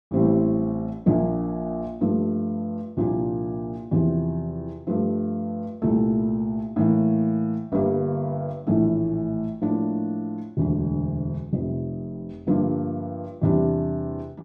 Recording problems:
none

